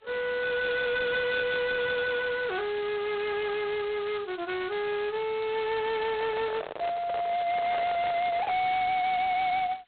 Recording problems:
telephone audio; 990 Hz to 2 kHz, G.726
distorted audio; hard clipping, signal-to-distortion ratio 7 dB
handling noise; from 6 to 8.5 s; peak -5 dB vs average level

